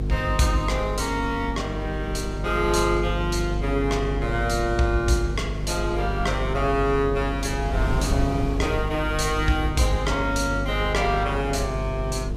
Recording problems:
hum; 50 Hz, harmonics up to 500 Hz, SNR 5 dB
wind noise; below 150 Hz, SNR 11 dB

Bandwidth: 15 kHz